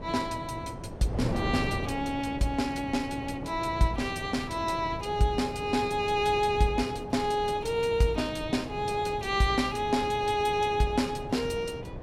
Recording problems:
wind noise; below 450 Hz, SNR 9 dB

